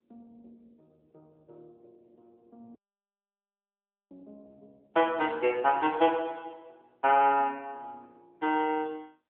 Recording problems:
telephone audio; 280 Hz to 3.4 kHz, AMR-NB
audio cutting out; at 3 s for 1.5 s

